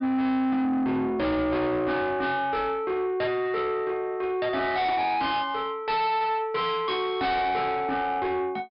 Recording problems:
treble missing; nothing above 5.5 kHz
distorted audio; soft clipping, signal-to-distortion ratio 7 dB

